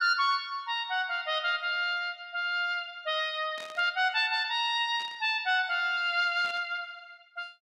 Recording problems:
static burst; at 3.5 s, at 5 s and at 6.5 s; peak -13 dB vs average level

